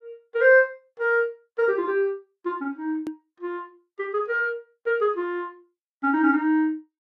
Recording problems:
edit click; at 3 s

